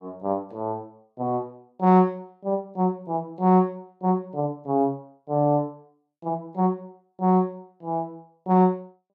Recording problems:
none

